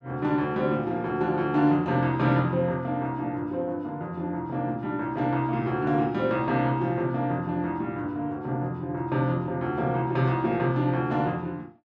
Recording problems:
none

